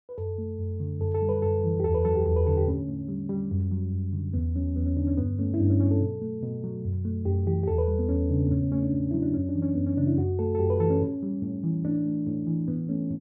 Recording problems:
none

